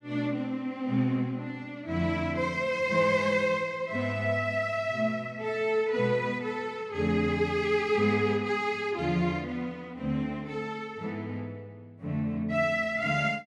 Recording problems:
none

